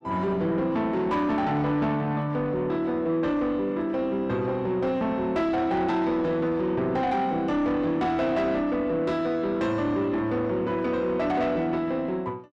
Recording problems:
distorted audio; soft clipping, signal-to-distortion ratio 11 dB

